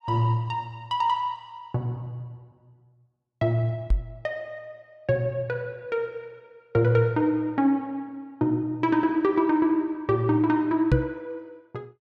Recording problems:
knock on the microphone; at 4 s and at 11 s; peak +8 dB vs average level

